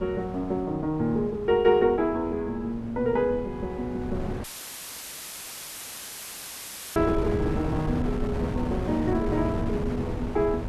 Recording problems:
wind on the microphone; below 340 Hz, SNR 7 dB
dropout; at 4.5 s for 2.5 s; filled with static

